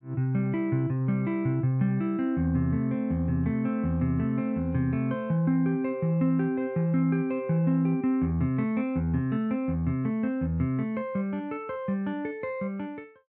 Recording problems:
none

